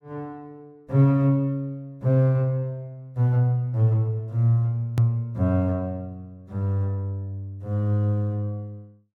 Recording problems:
click at an edit; at 5 s

